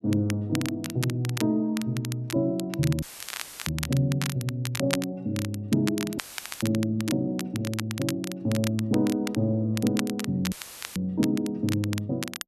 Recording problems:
crackling; vinyl, SNR 9 dB
dropout; at 3 s for 0.5 s, at 6 s and at 11 s; filled with static

